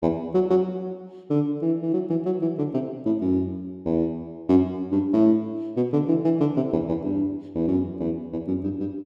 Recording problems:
none

